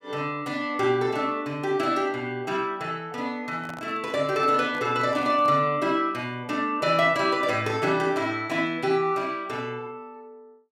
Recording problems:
handling noise; from 3.5 to 5.5 s; peak -10 dB vs average level

